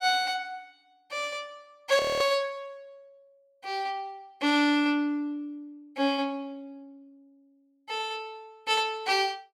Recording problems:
frozen audio; at 2 s

